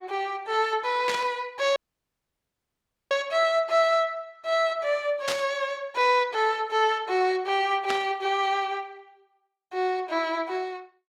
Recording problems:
lossy codec; Opus, log-spectral distance 2 dB
static burst; at 1 s, at 5.5 s and at 8 s; peak +1 dB vs average level
audio cutting out; at 2 s for 1.5 s

